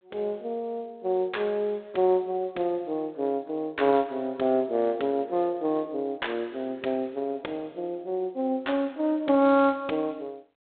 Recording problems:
phone line; 220 Hz to 3.7 kHz, G.726

